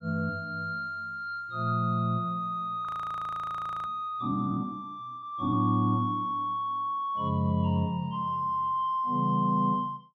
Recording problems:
audio freezing; at 3 s for 1 s

